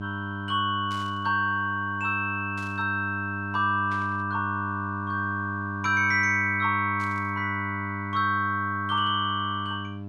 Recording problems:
mains hum; 50 Hz, harmonics up to 1 kHz, SNR 9 dB
burst of static; 4 times, first at 1 s; peak -14 dB vs average level

